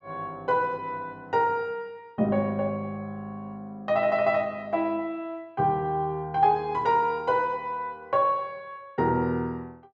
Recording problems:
none

